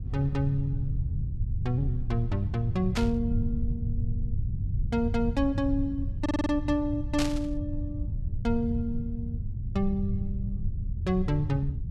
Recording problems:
rumble; below 110 Hz, SNR 2 dB
static burst; at 3 s and at 7 s; peak +2 dB vs average level
stutter; at 6 s

